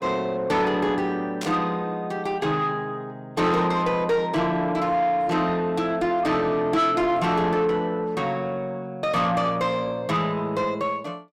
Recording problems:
distorted audio; soft clipping, signal-to-distortion ratio 10 dB
static burst; at 1.5 s; peak -5 dB vs average level

